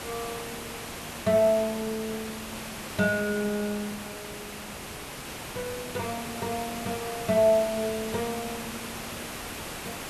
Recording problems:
background hiss; slope -3 dB per octave, SNR 8 dB

